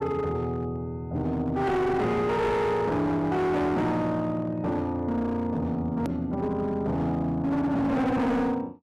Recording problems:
distortion; hard clipping, signal-to-distortion ratio 8 dB
click at an edit; at 6 s

